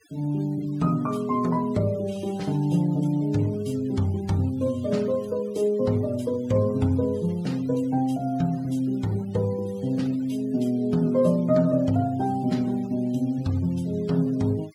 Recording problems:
noise reduction artefacts; signal-to-artefact ratio 25 dB

